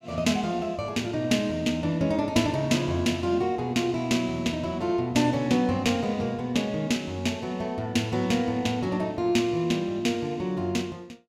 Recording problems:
none

